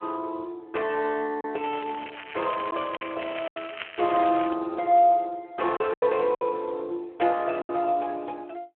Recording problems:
telephone audio; 300 Hz to 3.3 kHz, Speex
packet loss; 5% of the sound replaced, filled with silence
crackling; from 1.5 to 4.5 s; loose cable, SNR 12 dB

